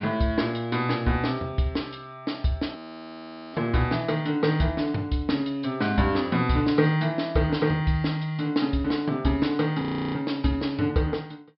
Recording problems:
treble missing; nothing above 5.3 kHz
audio freezing; at 3 s for 1 s and at 10 s

